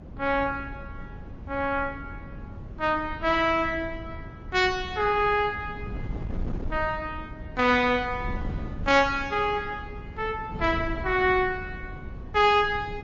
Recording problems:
codec artefacts; Opus, then MP3, log-spectral distance 2 dB, nothing above 5.8 kHz
wind on the microphone; below 180 Hz, SNR 13 dB

